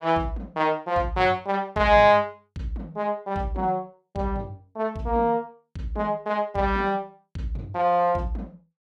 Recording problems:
none

